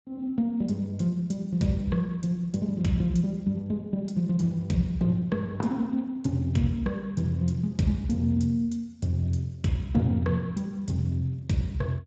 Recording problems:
codec artefacts; Speex, log-spectral distance 2 dB, nothing above 7.3 kHz

